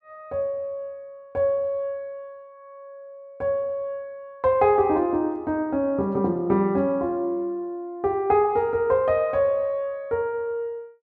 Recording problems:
none

